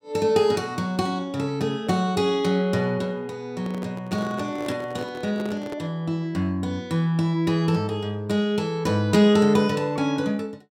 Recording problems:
handling noise; from 3.5 to 6 s; peak -7 dB vs average level

